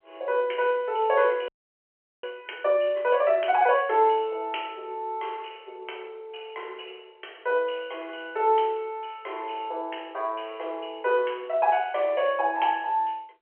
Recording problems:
telephone audio; 340 Hz to 3.2 kHz, G.711
audio freezing; at 1.5 s for 1 s

